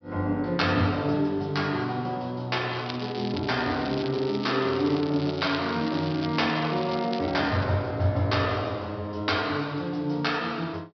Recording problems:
treble cut off; nothing above 5.5 kHz
crackling; from 2.5 to 7.5 s; loose cable, SNR 13 dB

